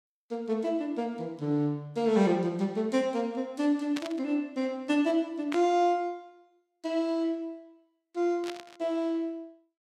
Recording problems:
static burst; at 4 s, at 5.5 s and at 8.5 s; peak -4 dB vs average level

